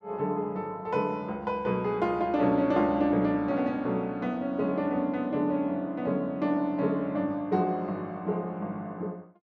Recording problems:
none

